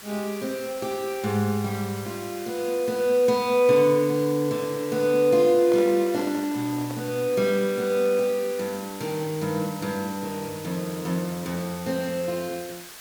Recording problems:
background hiss; SNR 15 dB
microphone handling noise; from 5.5 to 7 s; peak -8 dB vs average level

